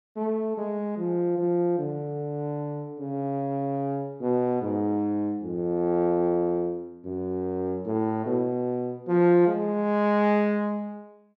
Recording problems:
none

